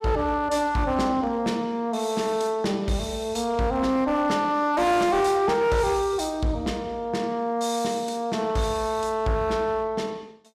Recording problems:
distorted audio; hard clipping, signal-to-distortion ratio 12 dB

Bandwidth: 15 kHz